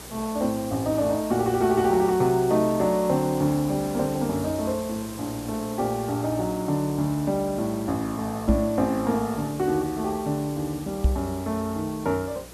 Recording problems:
electrical hum; 60 Hz, harmonics up to 480 Hz, SNR 22 dB
background hiss; slope -3 dB per octave, SNR 15 dB
knock on the microphone; at 8.5 s and at 11 s; peak +7 dB vs average level

